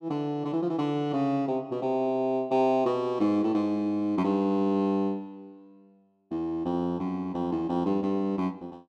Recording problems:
none

